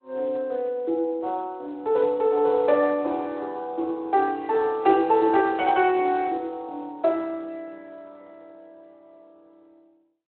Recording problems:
phone line; 300 Hz to 3.8 kHz, Speex

